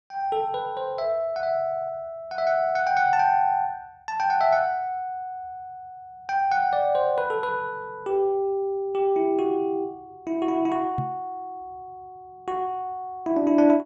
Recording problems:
microphone thump; at 11 s; peak -1 dB vs average level

